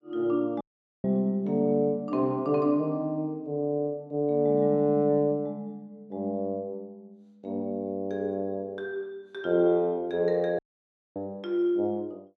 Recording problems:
dropout; at 0.5 s and at 11 s for 0.5 s

